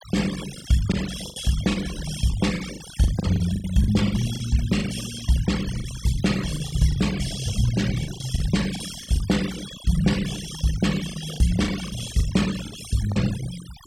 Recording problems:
denoising artefacts; signal-to-artefact ratio 12 dB
lost packets; 10% of the sound replaced, filled with the last packet

